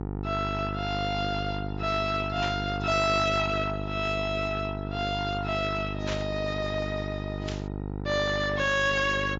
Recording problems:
lossy codec; AAC, log-spectral distance 2 dB, nothing above 7.3 kHz
distortion; soft clipping, signal-to-distortion ratio 12 dB
hum; 50 Hz, harmonics up to 1 kHz, SNR 5 dB
burst of static; at 2.5 s, at 6 s and at 7.5 s; peak -4 dB vs average level

